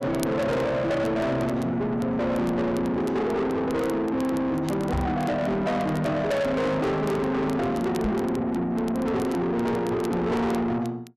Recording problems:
distorted audio; soft clipping, signal-to-distortion ratio 7 dB
crackle; vinyl, SNR 23 dB
microphone thump; at 5 s and at 8 s; peak +4 dB vs average level

